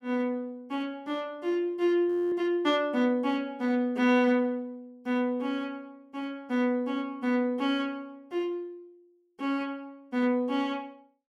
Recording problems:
frozen audio; at 2 s

